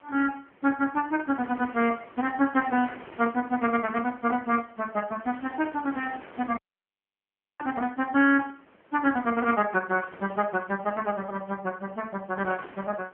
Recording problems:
telephone audio; 240 Hz to 3.3 kHz, AMR-NB
wind noise; below 1.8 kHz, SNR 22 dB
dropout; at 6.5 s for 1 s

